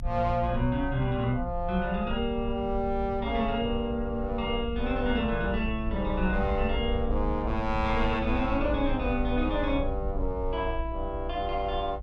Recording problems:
rumble; below 62 Hz, strongest tone 24 Hz, SNR 6 dB

